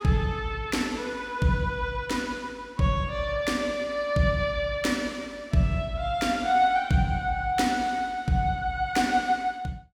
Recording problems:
none

